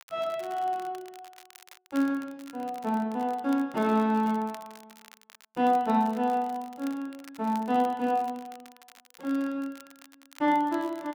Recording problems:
crackle; vinyl, SNR 23 dB

